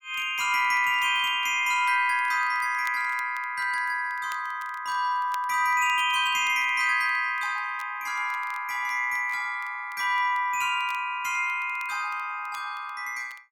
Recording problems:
crackle; vinyl, SNR 28 dB

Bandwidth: 17 kHz